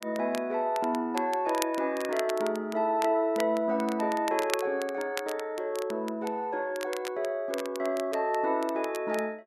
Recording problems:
crackling; vinyl, SNR 13 dB

